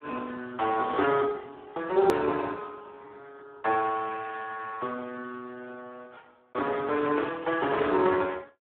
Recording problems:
telephone audio; 260 Hz to 2 kHz, Speex
hard cut with a click; at 2 s

